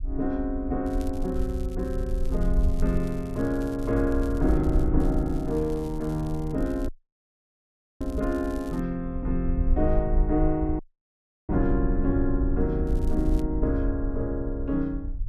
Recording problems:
low-frequency rumble; below 60 Hz, SNR 3 dB
crackling; from 1 to 5 s, from 5 to 9 s and at 13 s; loose cable, SNR 25 dB
dropout; at 7 s for 1 s and at 11 s for 0.5 s

